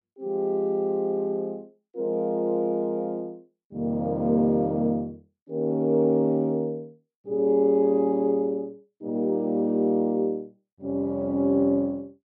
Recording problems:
none

